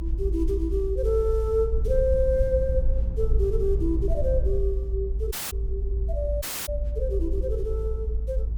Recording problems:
rumble; below 58 Hz, strongest tone 54 Hz, SNR 0 dB
dropout; at 5.5 s and at 6.5 s

